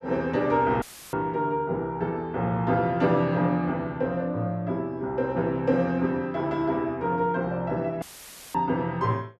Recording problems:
dropout; at 1 s and at 8 s for 0.5 s; filled with static

